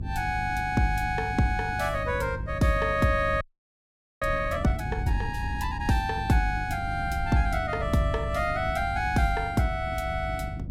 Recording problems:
mains hum; 50 Hz, harmonics up to 350 Hz, SNR 11 dB
rumble; below 120 Hz, SNR 9 dB
audio freezing; at 3.5 s for 1 s

